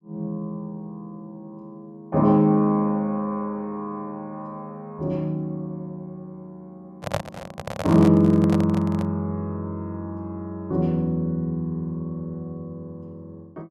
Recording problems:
handling noise; from 7 to 9 s; peak +2 dB vs average level

